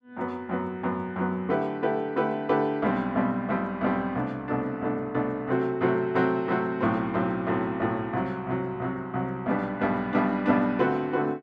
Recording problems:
none

